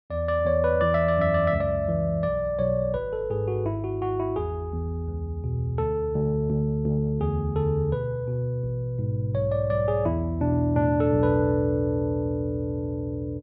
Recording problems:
none

